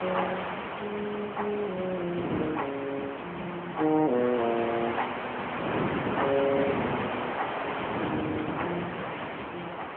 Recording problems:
phone line; 190 Hz to 3.2 kHz, AMR-NB
hiss; SNR 3 dB
wind noise; below 660 Hz, SNR 5 dB

